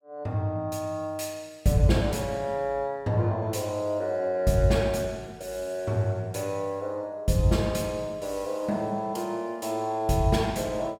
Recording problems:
none

